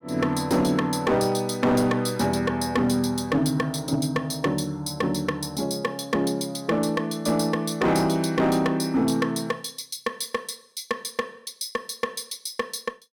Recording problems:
distortion; hard clipping, signal-to-distortion ratio 10 dB

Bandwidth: 17 kHz